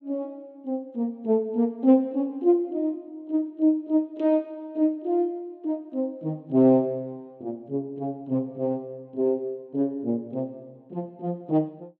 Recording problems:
none

